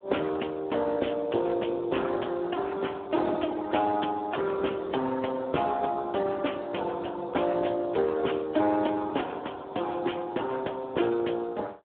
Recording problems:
telephone audio; 220 Hz to 3.5 kHz, Speex

